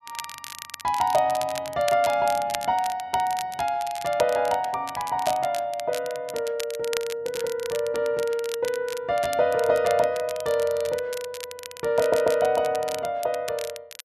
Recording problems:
crackle; vinyl, SNR 13 dB
audio stuttering; at 12 s

